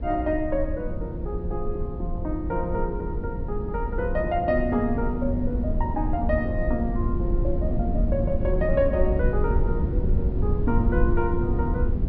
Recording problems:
low-pass filter; nothing above 5.5 kHz
rumble; below 98 Hz, SNR 0 dB

